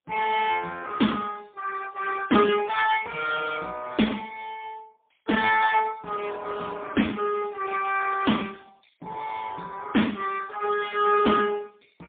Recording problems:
phone line; 130 Hz to 3.5 kHz, AMR-NB, then MP3

